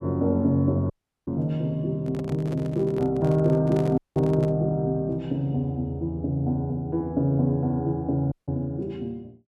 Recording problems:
audio cutting out; at 1 s, at 4 s and at 8.5 s
microphone handling noise; from 2 to 4.5 s; peak -7 dB vs average level

